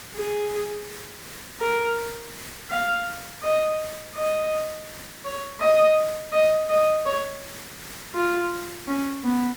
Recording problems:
hiss; SNR 13 dB

